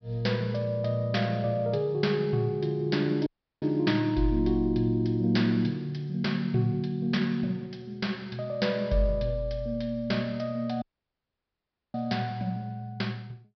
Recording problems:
treble cut off; nothing above 5.5 kHz
dropout; at 3.5 s and at 11 s for 1 s

